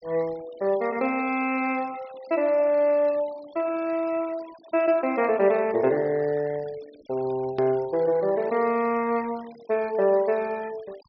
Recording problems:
treble cut off; nothing above 5.5 kHz
noise reduction artefacts; signal-to-artefact ratio 23 dB
click at an edit; at 7.5 s

